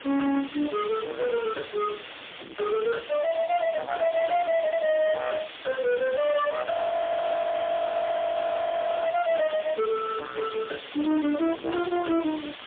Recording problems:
telephone audio; 220 Hz to 3.5 kHz, AMR-NB, then MP3
distortion; hard clipping, signal-to-distortion ratio 6 dB
background hiss; SNR 14 dB
wind noise; below 1.7 kHz, SNR 24 dB
audio freezing; at 6.5 s for 2.5 s

